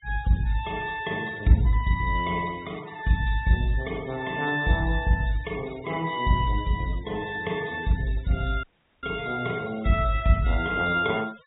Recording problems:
treble cut off; nothing above 4 kHz
denoising artefacts; signal-to-artefact ratio 21 dB
dropout; at 8.5 s

